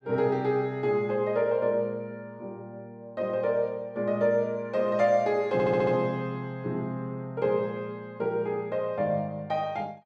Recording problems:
stutter; at 5.5 s

